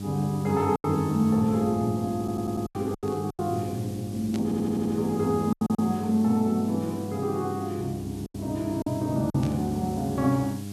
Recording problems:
hum; 50 Hz, harmonics up to 800 Hz, SNR 9 dB
background hiss; slope +3 dB per octave, SNR 21 dB
lost packets; 6% of the sound replaced, filled with silence
stutter; at 2 s, at 4.5 s and at 5.5 s
static burst; at 3 s, at 4.5 s and at 9.5 s; peak -9 dB vs average level

